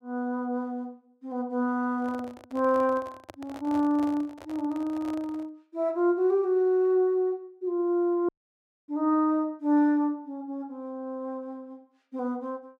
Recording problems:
microphone handling noise; from 2 to 5.5 s; peak -10 dB vs average level
dropout; at 8.5 s for 0.5 s

